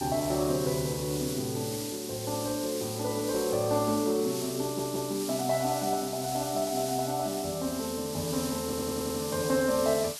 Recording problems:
hiss; SNR 7 dB
audio stuttering; at 4.5 s and at 8.5 s

